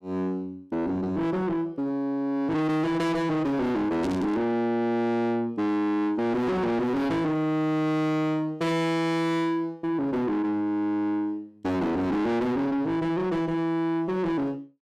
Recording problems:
distortion; soft clipping, signal-to-distortion ratio 6 dB
static burst; at 4 s; peak -10 dB vs average level

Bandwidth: 14 kHz